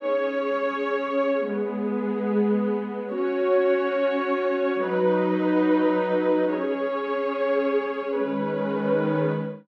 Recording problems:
none

